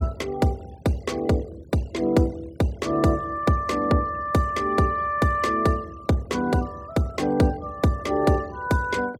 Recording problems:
noise reduction artefacts; signal-to-artefact ratio 24 dB

